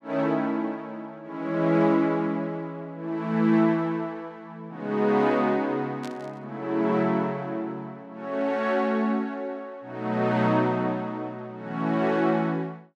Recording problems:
static burst; at 6 s; peak -13 dB vs average level

